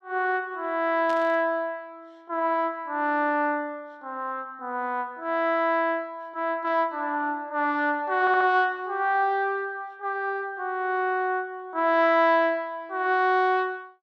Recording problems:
burst of static; at 1 s; peak -11 dB vs average level
stutter; at 8 s

